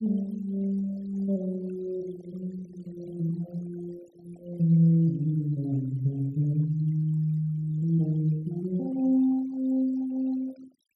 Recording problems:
denoising artefacts; signal-to-artefact ratio 26 dB

